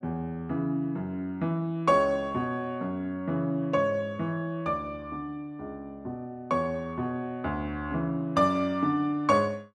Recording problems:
none

